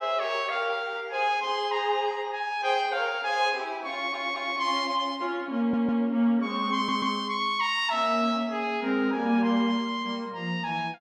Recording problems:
audio stuttering; at 4 s, at 5.5 s and at 7 s

